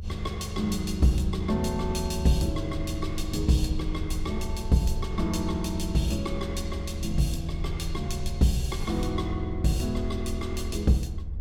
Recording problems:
low-frequency rumble; below 80 Hz, SNR 6 dB

